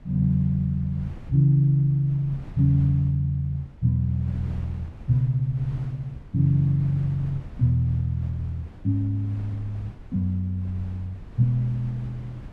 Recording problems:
wind on the microphone; below 180 Hz, SNR 18 dB

